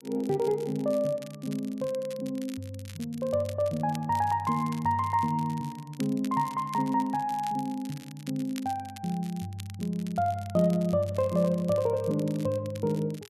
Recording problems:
crackle; vinyl, SNR 20 dB

